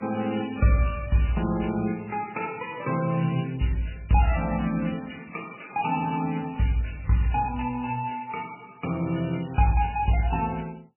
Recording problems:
lossy codec; MP3, then MP3, log-spectral distance 7 dB, nothing above 2.7 kHz

